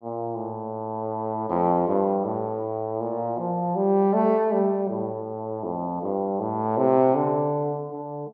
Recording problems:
none

